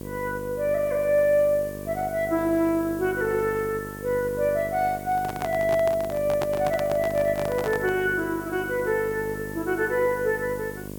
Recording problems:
hum; 50 Hz, harmonics up to 1.1 kHz, SNR 12 dB
background hiss; slope +4 dB per octave, SNR 20 dB
microphone handling noise; from 5 to 8 s; peak -1 dB vs average level

